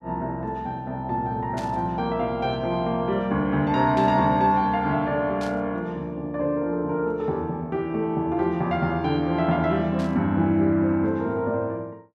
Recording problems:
static burst; 4 times, first at 1.5 s; peak -12 dB vs average level

